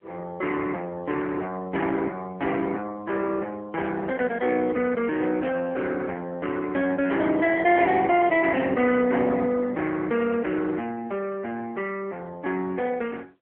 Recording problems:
telephone audio; 300 Hz to 2.6 kHz, AMR-NB

